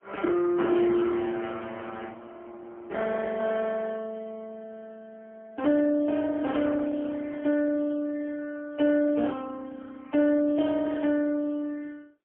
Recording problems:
phone line; 240 Hz to 3.1 kHz, AMR-NB, then MP3

